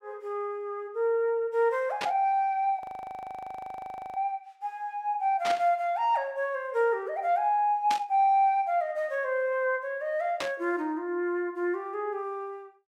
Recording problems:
burst of static; 4 times, first at 2 s; peak -1 dB vs average level
frozen audio; at 3 s for 1.5 s

